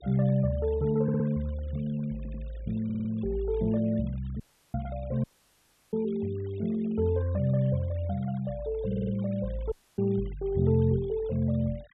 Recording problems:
treble missing; nothing above 4 kHz
noise reduction artefacts; signal-to-artefact ratio 25 dB
stutter; 4 times, first at 1 s
audio cutting out; at 4.5 s, at 5 s for 0.5 s and at 9.5 s

